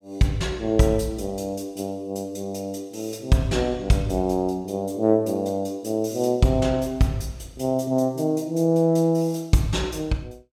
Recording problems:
none

